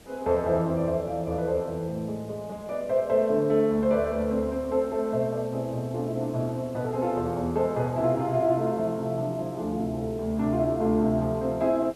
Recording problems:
hiss; SNR 23 dB

